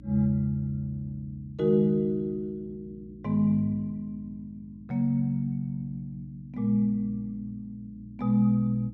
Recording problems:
electrical hum; 60 Hz, harmonics up to 300 Hz, SNR 21 dB

